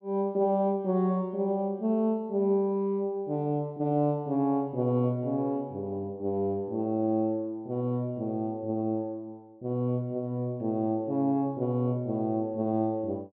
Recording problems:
none

